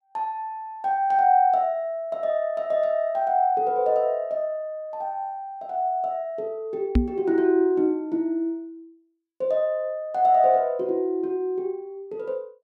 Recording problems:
knock on the microphone; at 7 s; peak +7 dB vs average level

